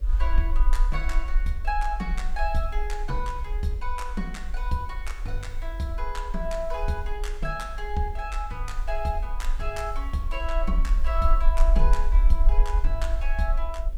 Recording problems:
hum; 50 Hz, harmonics up to 600 Hz, SNR 25 dB
background hiss; slope -3 dB per octave, SNR 27 dB
low-frequency rumble; below 42 Hz, strongest tone 20 Hz, SNR -3 dB

